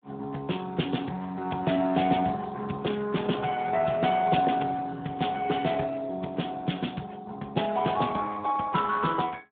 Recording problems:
phone line; 130 Hz to 3.6 kHz, Speex

